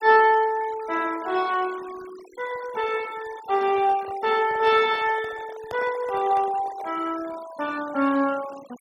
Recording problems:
noise reduction artefacts; signal-to-artefact ratio 20 dB
handling noise; from 3.5 to 7 s; peak -9 dB vs average level

